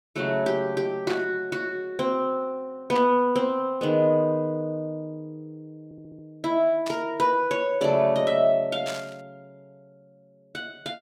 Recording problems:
burst of static; 4 times, first at 1 s; peak -6 dB vs average level
audio stuttering; at 6 s

